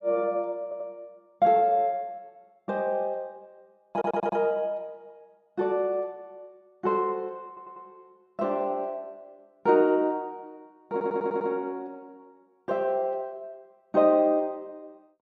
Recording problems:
stutter; 4 times, first at 0.5 s

